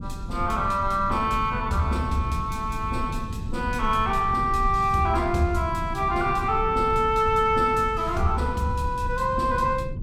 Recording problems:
rumble; below 130 Hz, SNR 9 dB

